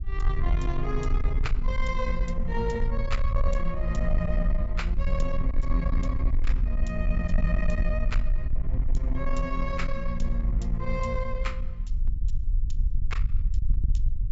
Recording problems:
low-pass filter; nothing above 8 kHz
distorted audio; soft clipping, signal-to-distortion ratio 10 dB
rumble; below 50 Hz, strongest tone 20 Hz, SNR -2 dB

